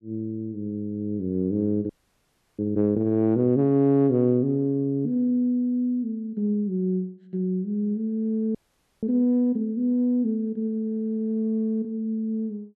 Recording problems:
audio freezing; at 2 s for 0.5 s and at 8.5 s

